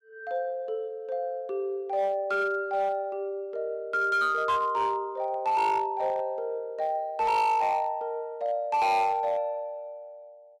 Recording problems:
distorted audio; hard clipping, signal-to-distortion ratio 11 dB

